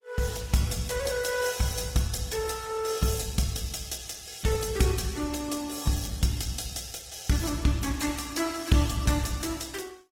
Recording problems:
codec artefacts; Opus, log-spectral distance 7 dB, nothing above 16.5 kHz

